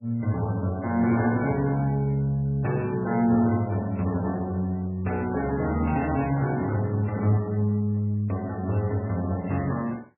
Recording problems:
codec artefacts; MP3, log-spectral distance 2 dB, nothing above 2.2 kHz

